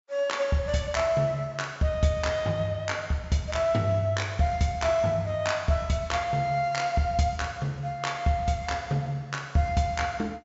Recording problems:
treble missing; nothing above 8 kHz

